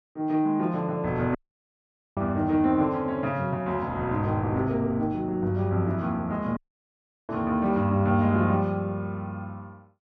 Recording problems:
dropout; at 1.5 s for 1 s and at 6.5 s for 0.5 s

